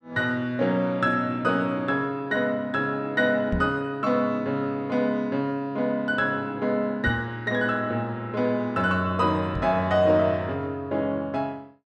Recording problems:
microphone bump; at 3.5 s, at 7 s and at 9.5 s; peak 0 dB vs average level

